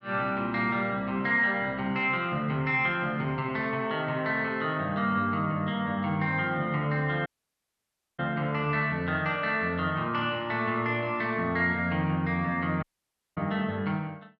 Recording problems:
audio cutting out; at 7.5 s for 1 s and at 13 s for 0.5 s

